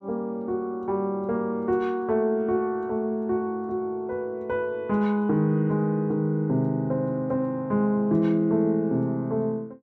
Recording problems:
none

